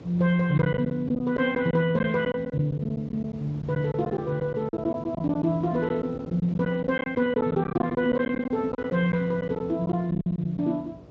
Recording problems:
lossy compression; Speex, log-spectral distance 2 dB
hum; 60 Hz, harmonics up to 660 Hz, SNR 27 dB
wind on the microphone; below 360 Hz, SNR 20 dB
lost packets; 11% of the sound replaced, filled with silence

